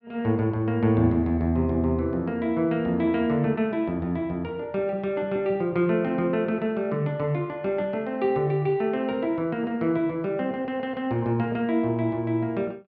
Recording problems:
none

